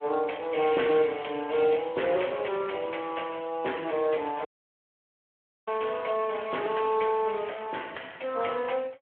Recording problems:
phone line; 260 Hz to 3.3 kHz, Speex
dropout; at 4.5 s for 1 s

